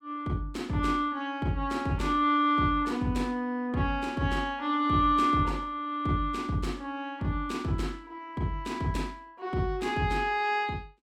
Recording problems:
none

